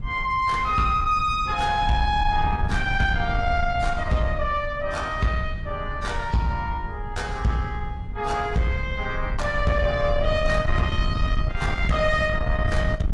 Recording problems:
codec artefacts; AAC, log-spectral distance 2 dB
distorted audio; soft clipping, signal-to-distortion ratio 11 dB
wind noise; below 110 Hz, SNR 5 dB

